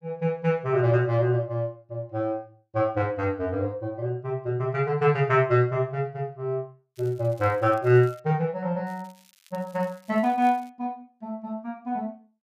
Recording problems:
crackling; from 7 to 8 s and from 9 to 11 s; loose cable, SNR 30 dB

